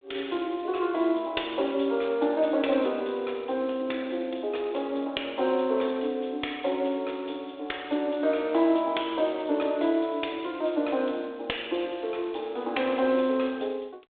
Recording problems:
telephone audio; 280 Hz to 3.6 kHz, G.726

